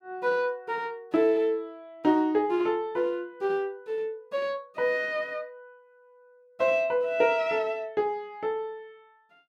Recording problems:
none

